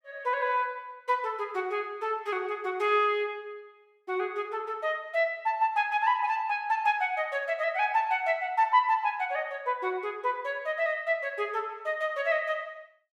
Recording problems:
none

